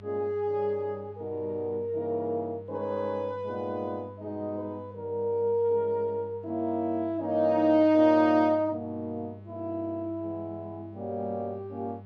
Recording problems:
hum; 50 Hz, harmonics up to 800 Hz, SNR 18 dB

